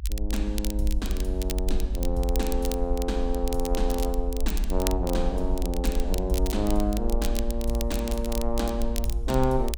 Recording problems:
rumble; below 56 Hz, SNR 1 dB
crackle; vinyl, SNR 9 dB

